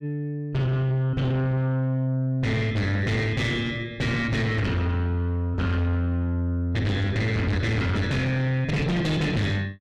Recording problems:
distorted audio; soft clipping, signal-to-distortion ratio 7 dB

